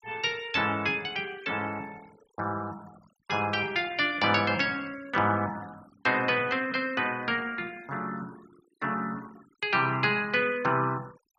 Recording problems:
noise reduction artefacts; signal-to-artefact ratio 23 dB

